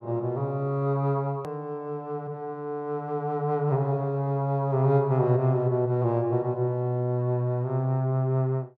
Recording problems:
hard cut with a click; at 1.5 s

